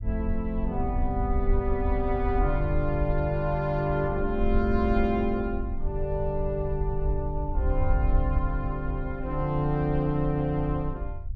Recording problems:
low-frequency rumble; below 68 Hz, SNR 3 dB

